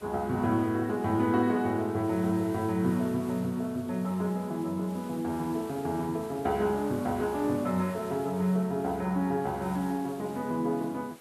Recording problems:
hiss; slope -3 dB per octave, SNR 21 dB

